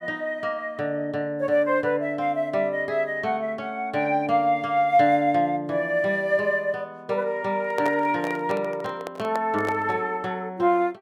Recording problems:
handling noise; from 7.5 to 10 s; peak -3 dB vs average level

